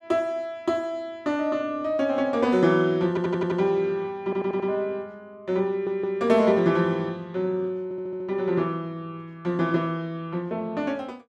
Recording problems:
audio stuttering; 4 times, first at 3 s

